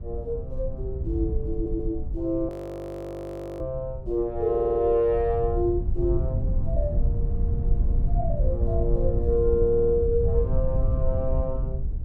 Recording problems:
wind on the microphone; below 80 Hz, SNR 1 dB
audio stuttering; at 1.5 s, at 4.5 s and at 9.5 s
audio freezing; at 2.5 s for 1 s

